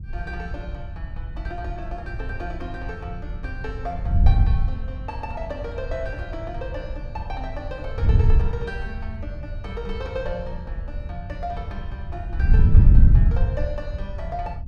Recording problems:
wind on the microphone; below 88 Hz, SNR -9 dB

